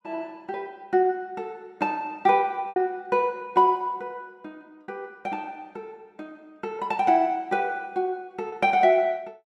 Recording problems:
packet loss; 1.5% of the sound replaced, filled with repeated pitch periods

